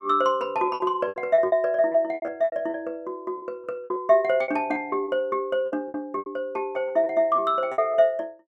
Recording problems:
lost packets; 13% of the sound replaced, filled with repeated pitch periods

